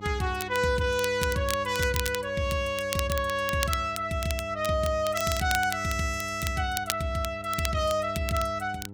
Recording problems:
hum; 50 Hz, harmonics up to 900 Hz, SNR 15 dB
crackle; vinyl, SNR 9 dB

